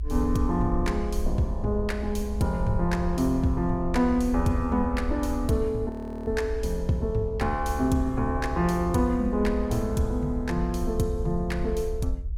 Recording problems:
rumble; below 68 Hz, SNR 7 dB
frozen audio; at 6 s

